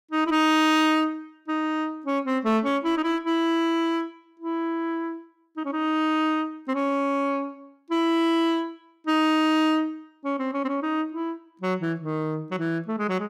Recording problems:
distortion; hard clipping, uneven, signal-to-distortion ratio 10 dB

